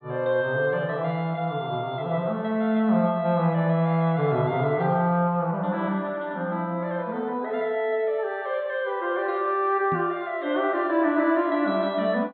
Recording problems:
treble cut off; nothing above 4.3 kHz
knock on the microphone; at 10 s; peak -4 dB vs average level

